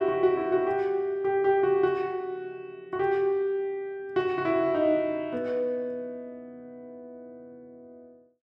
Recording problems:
none

